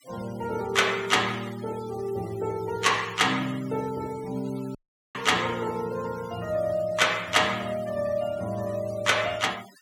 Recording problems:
noise reduction artefacts; signal-to-artefact ratio 19 dB
dropout; at 5 s

